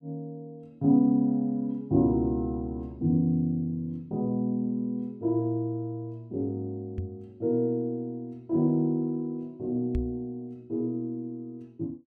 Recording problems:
microphone bump; at 7 s and at 10 s; peak +1 dB vs average level

